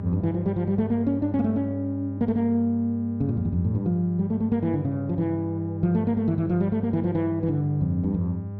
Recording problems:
electrical hum; 50 Hz, harmonics up to 800 Hz, SNR 8 dB

